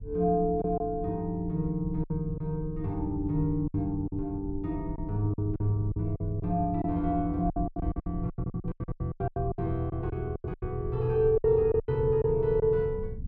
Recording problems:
low-frequency rumble; below 100 Hz, SNR 11 dB
lost packets; 13% of the sound replaced, filled with silence

